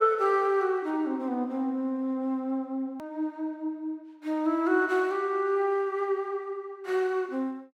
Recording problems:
edit click; at 3 s

